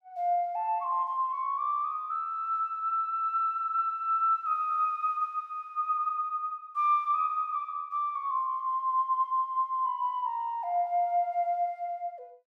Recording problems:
none

